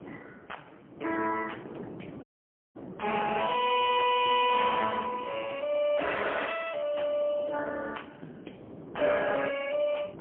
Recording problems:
telephone audio; 260 Hz to 3.3 kHz, AMR-NB, then MP3
wind noise; below 480 Hz, SNR 17 dB
audio cutting out; at 2 s for 0.5 s

